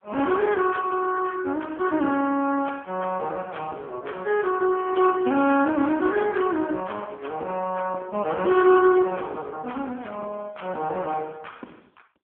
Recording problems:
phone line; 220 Hz to 3.3 kHz, AMR-NB

